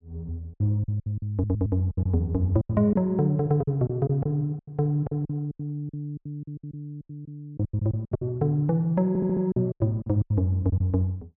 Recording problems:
lost packets; 15% of the sound replaced, filled with silence
audio stuttering; at 1.5 s and at 9 s

